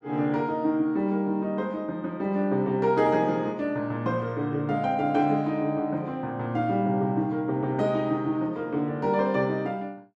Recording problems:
none

